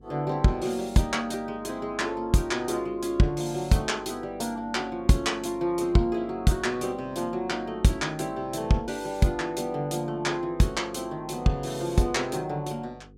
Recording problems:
hum; 50 Hz, harmonics up to 500 Hz, SNR 25 dB

